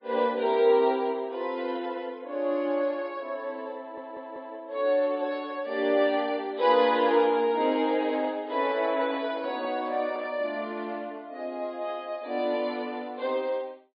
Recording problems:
lossy codec; MP3, log-spectral distance 2 dB, nothing above 4.1 kHz
audio stuttering; at 4 s
handling noise; from 7 to 11 s; peak -9 dB vs average level

